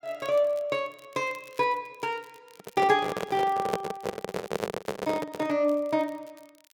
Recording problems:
crackling; vinyl, SNR 28 dB
microphone handling noise; from 2.5 to 5.5 s; peak +4 dB vs average level

